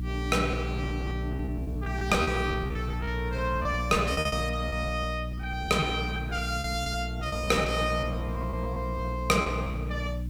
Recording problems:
hum; 60 Hz, harmonics up to 300 Hz, SNR 4 dB
hiss; slope -1 dB per octave, SNR 29 dB
packet loss; 13% of the sound replaced, filled with repeated pitch periods

